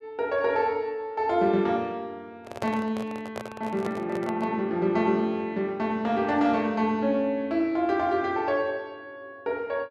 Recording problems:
microphone handling noise; from 2.5 to 4.5 s; peak -2 dB vs average level

